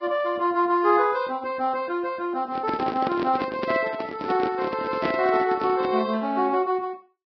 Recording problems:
codec artefacts; Vorbis, log-spectral distance 3 dB, nothing above 4.8 kHz
handling noise; from 2.5 to 6 s; peak +1 dB vs average level

